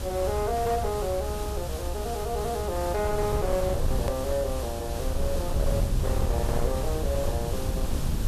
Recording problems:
distortion; hard clipping, signal-to-distortion ratio 10 dB
background hiss; SNR 7 dB
rumble; below 100 Hz, SNR 2 dB
hard cut with a click; at 4 s

